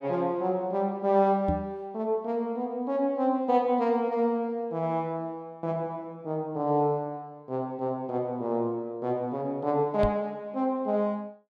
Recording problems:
knock on the microphone; at 1.5 s and at 10 s; peak +3 dB vs average level

